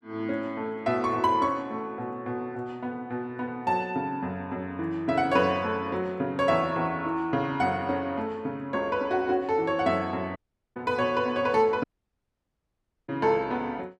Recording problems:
audio cutting out; at 10 s and at 12 s for 1 s

